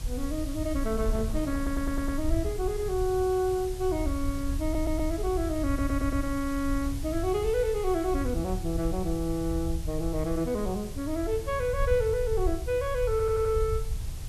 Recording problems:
background hiss; slope +1 dB per octave, SNR 16 dB
low-frequency rumble; below 78 Hz, SNR 6 dB
wind on the microphone; below 250 Hz, SNR 19 dB
stutter; 4 times, first at 1.5 s

